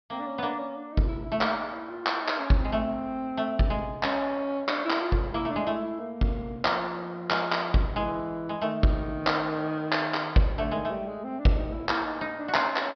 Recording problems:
treble cut off; nothing above 5.5 kHz

